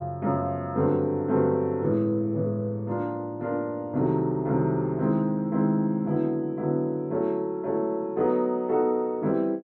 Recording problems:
none

